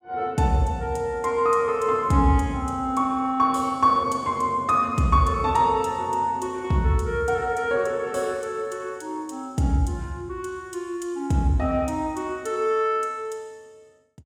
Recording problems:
none

